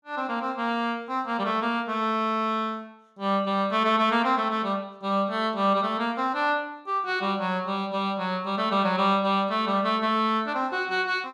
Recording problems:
none

